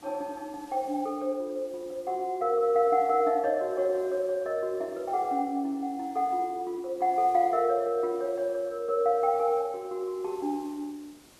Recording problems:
background hiss; SNR 27 dB

